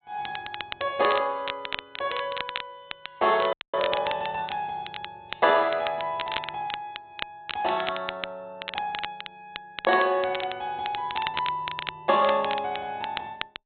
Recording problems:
treble missing; nothing above 4 kHz
crackling; vinyl, SNR 9 dB
frozen audio; at 3.5 s

